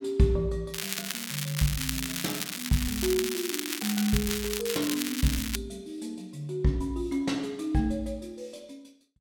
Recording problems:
crackling; from 0.5 to 4.5 s and at 4.5 s; loose cable, SNR 2 dB

